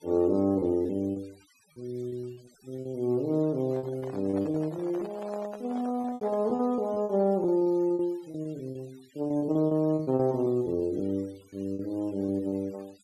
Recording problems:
noise reduction artefacts; signal-to-artefact ratio 27 dB
packet loss; 12% of the sound replaced, filled with repeated pitch periods
handling noise; from 3.5 to 6.5 s; peak -10 dB vs average level

